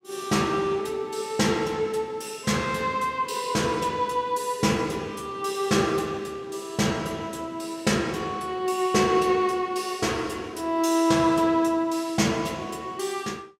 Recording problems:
none

